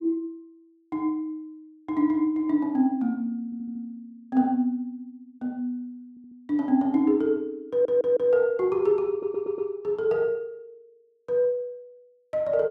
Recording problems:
stutter; 4 times, first at 3.5 s

